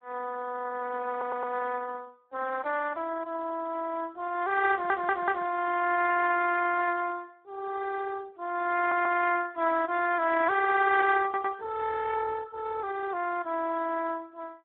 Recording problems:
phone line; 280 Hz to 2.7 kHz, Speex
audio stuttering; 4 times, first at 1 s

